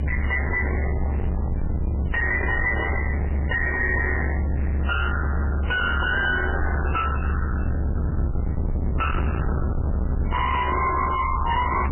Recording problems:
codec artefacts; MP3, log-spectral distance 6 dB, nothing above 3 kHz
distorted audio; soft clipping, signal-to-distortion ratio 5 dB
hiss; SNR 27 dB
low-frequency rumble; below 1.3 kHz, strongest tone 70 Hz, SNR 2 dB

